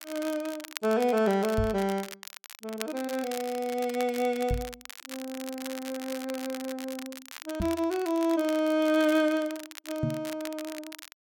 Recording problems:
crackling; vinyl, SNR 13 dB
microphone thump; 4 times, first at 1.5 s; peak +3 dB vs average level

